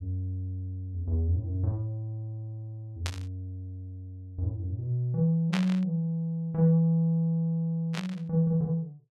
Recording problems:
static burst; at 3 s, at 5.5 s and at 8 s; peak 0 dB vs average level

